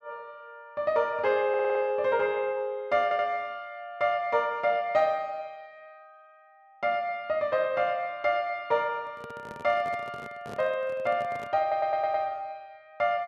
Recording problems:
stutter; at 1.5 s, at 3 s and at 12 s
handling noise; from 9 to 12 s; peak -9 dB vs average level

